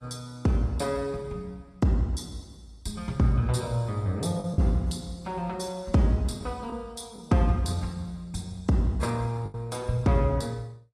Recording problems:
codec artefacts; AAC, log-spectral distance 2 dB
packet loss; 2% of the sound replaced, filled with the last packet

